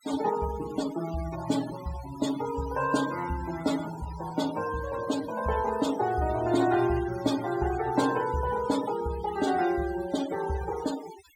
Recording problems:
denoising artefacts; signal-to-artefact ratio 13 dB

